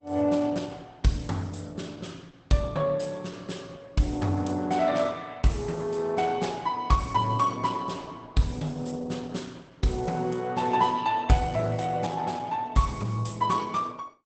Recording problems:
lossy compression; Opus, log-spectral distance 4 dB, nothing above 8.2 kHz

